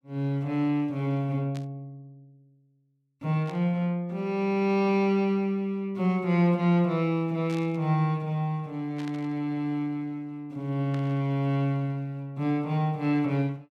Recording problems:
static burst; 5 times, first at 1.5 s; peak -13 dB vs average level

